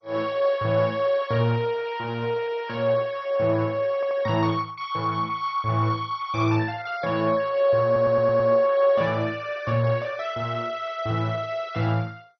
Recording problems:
lossy codec; MP2, log-spectral distance 3 dB, nothing above 5 kHz
audio stuttering; at 4 s and at 8 s

